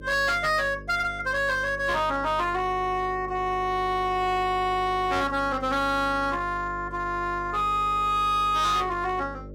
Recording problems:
distortion; hard clipping, uneven, signal-to-distortion ratio 9 dB
hum; 50 Hz, harmonics up to 600 Hz, SNR 16 dB

